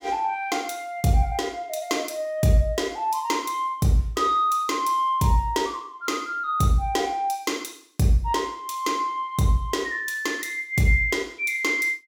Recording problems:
none

